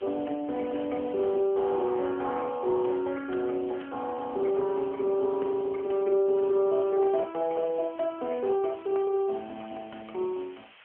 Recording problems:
telephone audio; 300 Hz to 3.4 kHz, AMR-NB
hiss; SNR 25 dB

